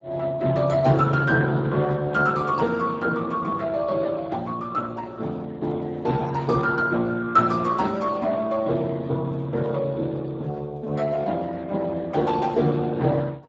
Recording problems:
lossy compression; Speex, log-spectral distance 3 dB, nothing above 7.3 kHz

